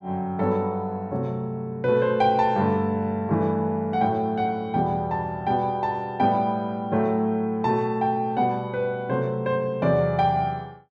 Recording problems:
none

